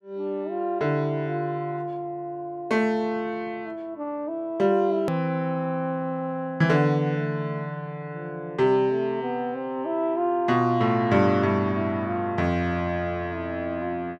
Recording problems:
edit click; at 5 s

